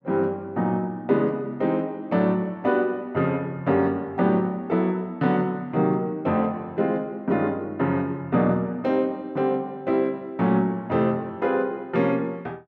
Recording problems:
none

